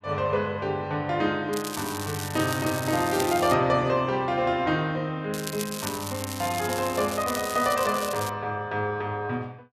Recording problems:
crackle; from 1.5 to 3.5 s and from 5.5 to 8.5 s; loose cable, SNR 9 dB

